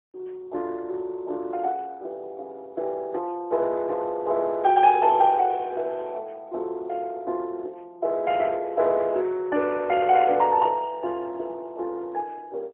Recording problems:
phone line; 300 Hz to 3.5 kHz, AMR-NB, then MP3

